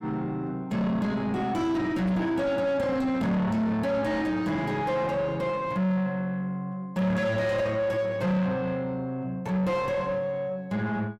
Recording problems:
distortion; soft clipping, signal-to-distortion ratio 7 dB

